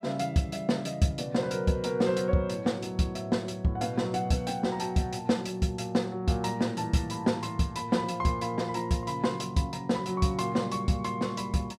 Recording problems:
none

